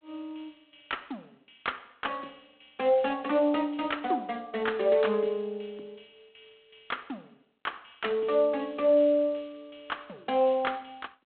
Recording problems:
telephone audio; 240 Hz to 3.6 kHz, G.726

